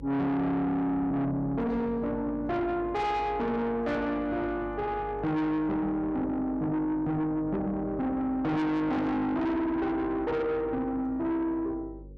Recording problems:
distorted audio; soft clipping, signal-to-distortion ratio 7 dB
hum; 50 Hz, harmonics up to 750 Hz, SNR 17 dB

